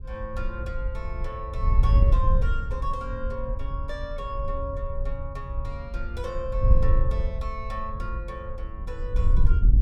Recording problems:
wind on the microphone; below 64 Hz, SNR -7 dB

